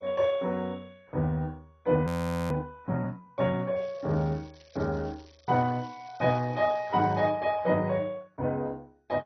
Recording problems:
codec artefacts; AAC, then MP2, log-spectral distance 4 dB, nothing above 13.1 kHz
audio freezing; at 2 s
crackling; from 4 to 7.5 s; loose cable, SNR 28 dB

